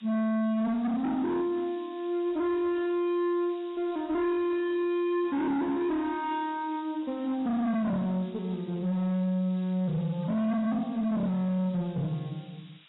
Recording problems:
lossy codec; AAC, log-spectral distance 5 dB, nothing above 3.9 kHz
distorted audio; hard clipping, signal-to-distortion ratio 6 dB
background hiss; SNR 27 dB

